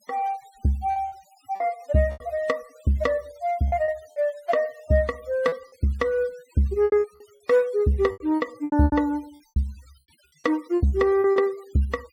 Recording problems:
denoising artefacts; signal-to-artefact ratio 26 dB
packet loss; 10% of the sound replaced, filled with repeated pitch periods

